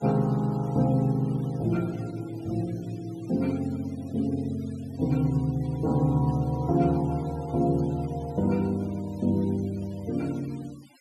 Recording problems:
noise reduction artefacts; signal-to-artefact ratio 24 dB

